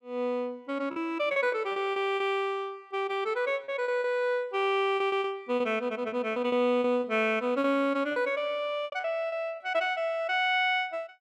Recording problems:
lost packets; 9% of the sound replaced, filled with repeated pitch periods

